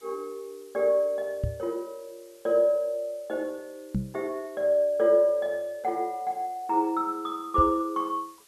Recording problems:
hiss; slope 0 dB per octave, SNR 29 dB
microphone thump; at 1.5 s, at 4 s and at 7.5 s; peak +2 dB vs average level

